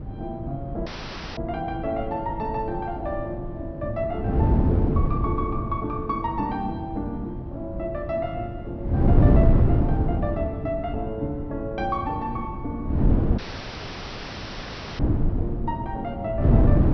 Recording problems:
treble cut off; nothing above 5.9 kHz
wind noise; below 220 Hz, SNR -4 dB
dropout; at 1 s for 0.5 s and at 13 s for 1.5 s

